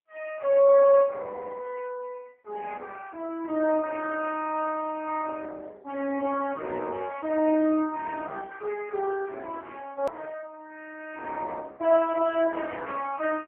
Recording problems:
telephone audio; 240 Hz to 2.8 kHz, AMR-NB
click at an edit; at 10 s

